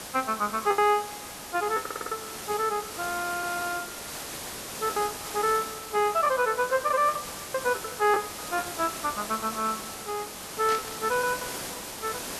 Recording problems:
hiss; slope -2 dB per octave, SNR 8 dB
lost packets; 10% of the sound replaced, filled with the last packet
stutter; at 2 s and at 3.5 s
burst of static; at 11 s; peak -3 dB vs average level

